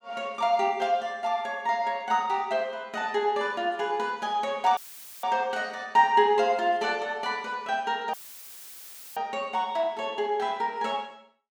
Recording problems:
audio cutting out; at 5 s and at 8 s for 1 s; filled with static

